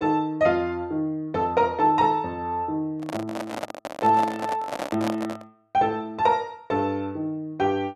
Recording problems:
microphone handling noise; from 3 to 5.5 s; peak -1 dB vs average level

